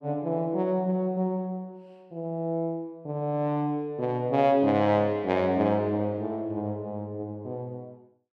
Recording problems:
none

